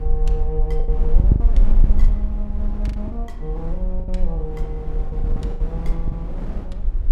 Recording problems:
rumble; below 46 Hz, strongest tone 20 Hz, SNR -9 dB
wind on the microphone; below 350 Hz, SNR 4 dB
packet loss; 10% of the sound replaced, filled with the last packet

